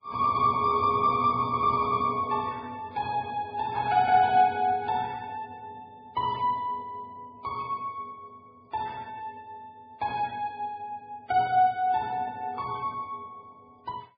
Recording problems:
codec artefacts; MP3, then Vorbis, log-spectral distance 2 dB, nothing above 4.5 kHz

